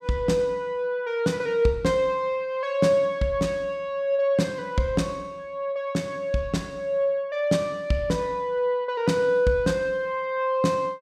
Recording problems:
none

